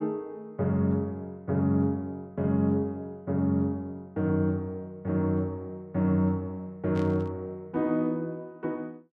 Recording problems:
burst of static; at 7 s; peak -13 dB vs average level

